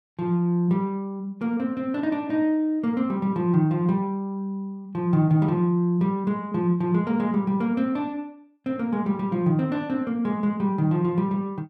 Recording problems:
none

